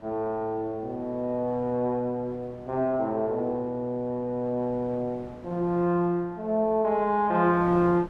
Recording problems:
wind on the microphone; below 690 Hz, SNR 21 dB

